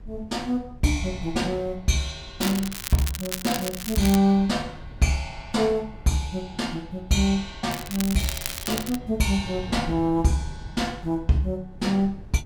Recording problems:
wind noise; below 120 Hz, SNR 17 dB
crackle; from 2.5 to 4 s and from 7.5 to 9 s; loose cable, SNR 7 dB

